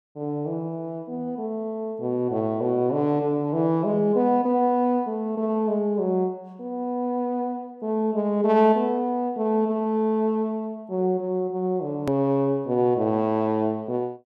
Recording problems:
edit click; at 12 s

